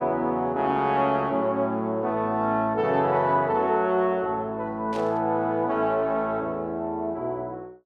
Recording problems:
static burst; at 5 s; peak -13 dB vs average level

